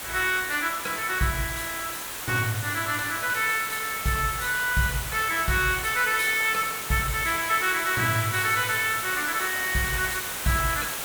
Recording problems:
background hiss; slope -1 dB per octave, SNR 6 dB

